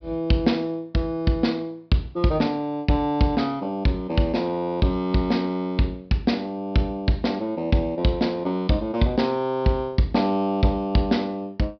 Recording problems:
treble missing; nothing above 5.5 kHz

